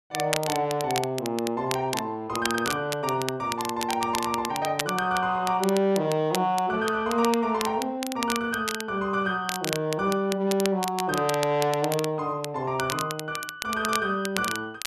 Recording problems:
crackling; vinyl, SNR 8 dB

